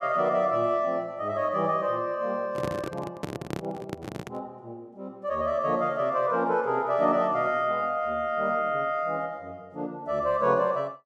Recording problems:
microphone handling noise; from 2.5 to 4.5 s; peak -2 dB vs average level

